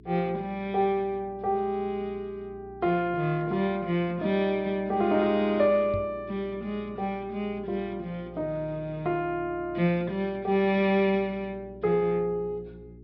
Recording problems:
treble cut off; nothing above 5.5 kHz
hum; 60 Hz, harmonics up to 420 Hz, SNR 22 dB
microphone bump; at 6 s; peak -4 dB vs average level

